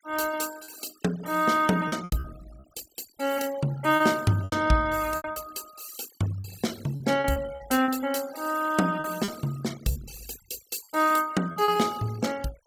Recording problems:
noise reduction artefacts; signal-to-artefact ratio 18 dB
packet loss; 8% of the sound replaced, filled with repeated pitch periods

